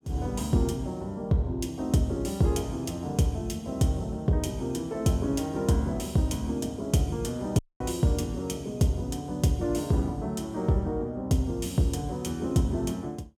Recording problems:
dropout; at 7.5 s

